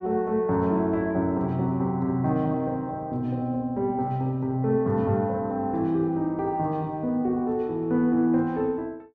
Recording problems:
none

